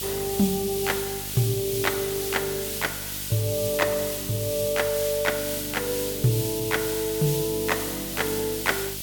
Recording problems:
hum; 50 Hz, harmonics up to 1.3 kHz, SNR 14 dB
hiss; SNR 3 dB

